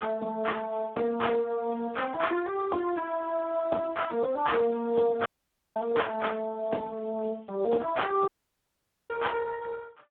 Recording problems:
phone line; 170 Hz to 3.5 kHz, Speex
dropout; at 5.5 s for 0.5 s and at 8.5 s for 1 s

